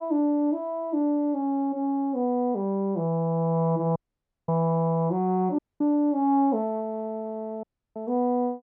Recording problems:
audio cutting out; at 4 s for 0.5 s, at 5.5 s and at 7.5 s

